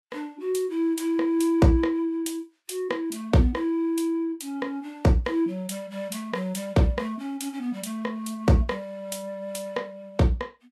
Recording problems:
lossy codec; Vorbis, log-spectral distance 2 dB, nothing above 12.7 kHz

